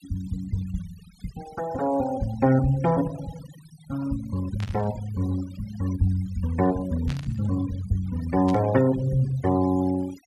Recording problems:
noise reduction artefacts; signal-to-artefact ratio 18 dB
burst of static; at 4.5 s, at 7 s and at 8.5 s; peak -9 dB vs average level

